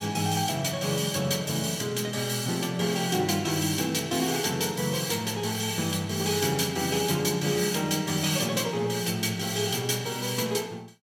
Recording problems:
none

